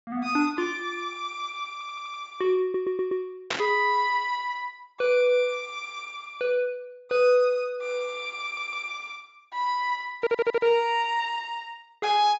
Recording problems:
treble cut off; nothing above 8 kHz
audio stuttering; 4 times, first at 1.5 s
static burst; at 3.5 s; peak +2 dB vs average level

